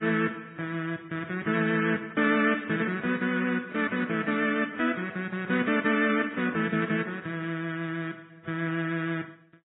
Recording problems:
lossy codec; MP3, then AAC, log-spectral distance 3 dB, nothing above 3.6 kHz
static burst; at 2.5 s; peak -19 dB vs average level

